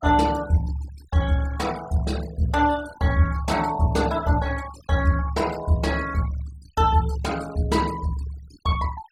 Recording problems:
denoising artefacts; signal-to-artefact ratio 17 dB

